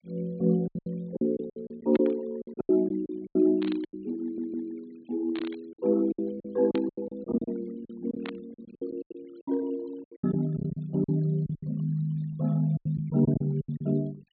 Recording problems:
treble cut off; nothing above 4.4 kHz
noise reduction artefacts; signal-to-artefact ratio 26 dB
packet loss; 15% of the sound replaced, filled with silence
burst of static; 5 times, first at 2 s; peak -5 dB vs average level
stutter; at 4 s

